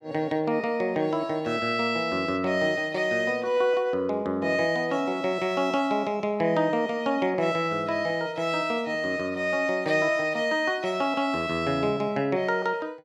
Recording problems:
none

